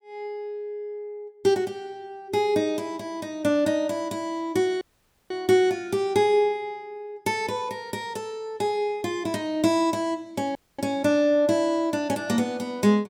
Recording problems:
audio cutting out; at 5 s and at 11 s

